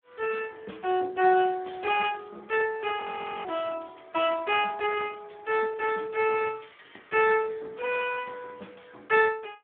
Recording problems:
telephone audio; 280 Hz to 3.4 kHz, Speex
audio freezing; at 3 s

